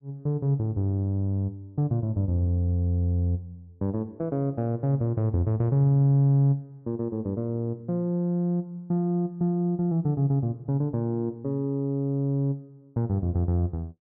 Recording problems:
none

